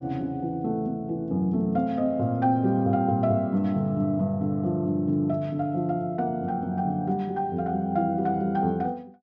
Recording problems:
treble cut off; nothing above 8 kHz

